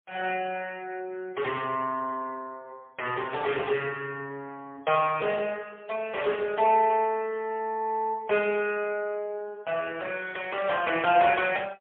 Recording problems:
phone line; 150 Hz to 3.4 kHz, AMR-NB, then MP3

